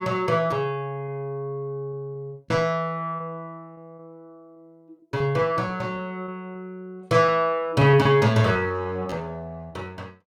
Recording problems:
lost packets; 9% of the sound replaced, filled with repeated pitch periods

